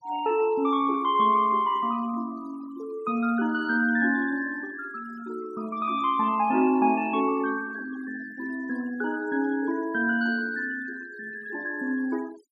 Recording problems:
denoising artefacts; signal-to-artefact ratio 21 dB

